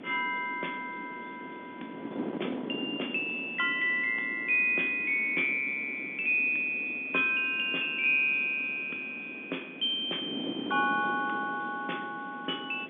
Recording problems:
phone line; 220 Hz to 3.5 kHz, G.711
hiss; SNR 27 dB
wind on the microphone; below 460 Hz, SNR 13 dB

